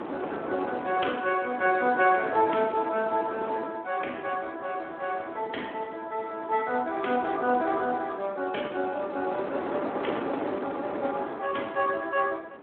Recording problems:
telephone audio; 260 Hz to 3.4 kHz, Speex
wind noise; below 890 Hz, SNR 8 dB

